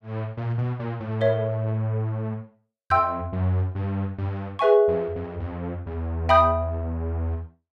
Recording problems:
none

